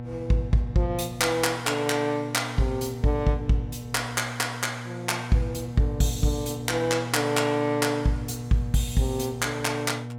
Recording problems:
hum; 60 Hz, harmonics up to 840 Hz, SNR 10 dB

